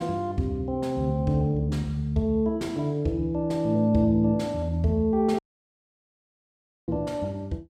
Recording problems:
audio cutting out; at 5.5 s for 1.5 s

